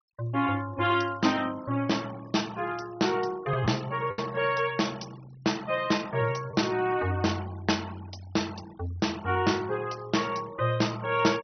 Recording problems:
treble missing; nothing above 6.1 kHz
noise reduction artefacts; signal-to-artefact ratio 22 dB
packet loss; 0.9% of the sound replaced, filled with the last packet

